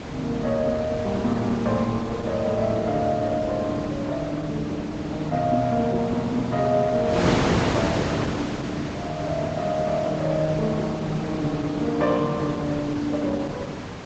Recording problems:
low-pass filter; nothing above 8 kHz
lossy codec; Opus, log-spectral distance 3 dB
wind noise; below 1.1 kHz, SNR 6 dB

